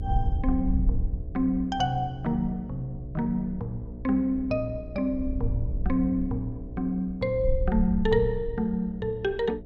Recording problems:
hum; 60 Hz, harmonics up to 660 Hz, SNR 15 dB
wind noise; below 66 Hz, SNR 6 dB

